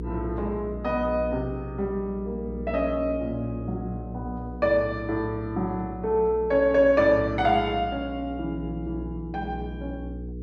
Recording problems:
electrical hum; 60 Hz, harmonics up to 480 Hz, SNR 11 dB

